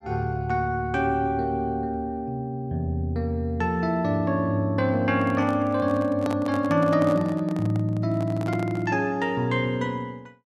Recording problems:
handling noise; from 5 to 9 s; peak -5 dB vs average level

